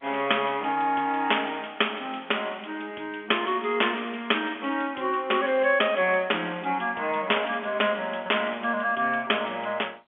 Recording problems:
phone line; 320 Hz to 3.4 kHz, G.711

